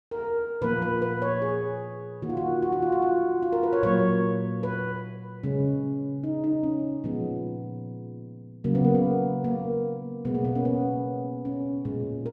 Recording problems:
none

